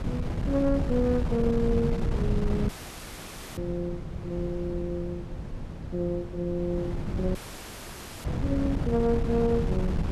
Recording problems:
wind on the microphone; below 190 Hz, SNR 2 dB
audio cutting out; at 2.5 s for 1 s and at 7.5 s for 1 s

